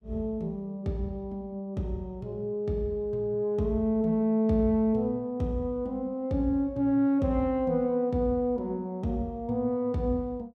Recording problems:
none

